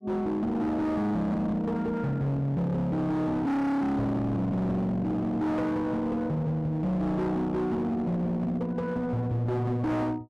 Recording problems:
distorted audio; hard clipping, uneven, signal-to-distortion ratio 7 dB

